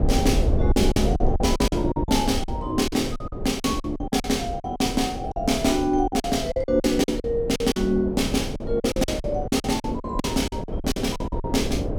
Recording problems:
rumble; below 72 Hz, SNR 8 dB
wind on the microphone; below 540 Hz, SNR 7 dB
lost packets; 16% of the sound replaced, filled with silence

